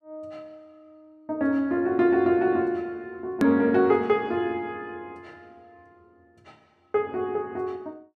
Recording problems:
hard cut with a click; at 3.5 s

